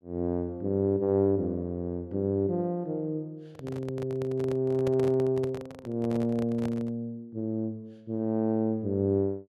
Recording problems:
handling noise; from 3.5 to 7 s; peak -4 dB vs average level

